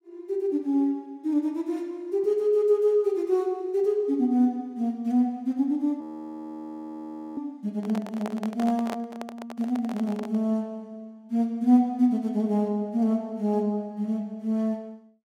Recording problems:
frozen audio; at 6 s for 1.5 s
microphone handling noise; from 8 to 10 s; peak -5 dB vs average level

